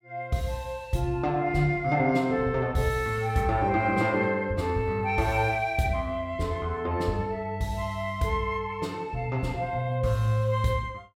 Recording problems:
none

